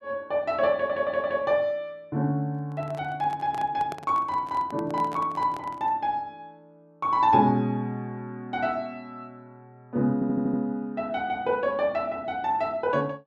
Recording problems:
stutter; at 0.5 s and at 10 s
handling noise; from 2.5 to 6 s; peak -7 dB vs average level

